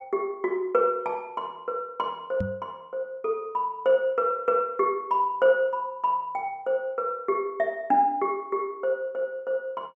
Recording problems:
microphone bump; at 2.5 s; peak -1 dB vs average level

